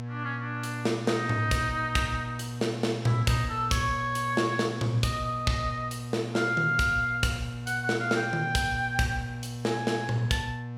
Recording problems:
hum; 60 Hz, harmonics up to 1.3 kHz, SNR 9 dB

